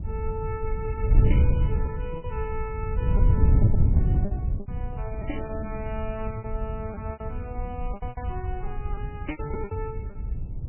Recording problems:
codec artefacts; MP3, log-spectral distance 2 dB, nothing above 2.4 kHz
wind noise; below 100 Hz, SNR -8 dB
packet loss; 11% of the sound replaced, filled with repeated pitch periods

